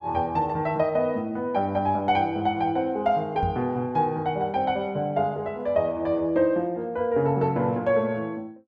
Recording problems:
microphone thump; at 3.5 s; peak -1 dB vs average level

